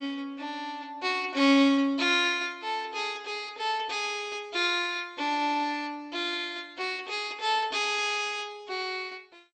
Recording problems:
lossy compression; MP2, log-spectral distance 4 dB, nothing above 8.2 kHz

